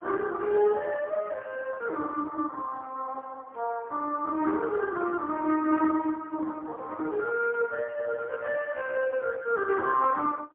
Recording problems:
telephone audio; 280 Hz to 2.9 kHz, AMR-NB, then MP3

